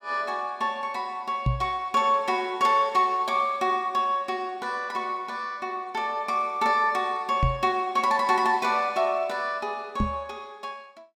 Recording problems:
microphone bump; at 1.5 s, at 7.5 s and at 10 s; peak +4 dB vs average level

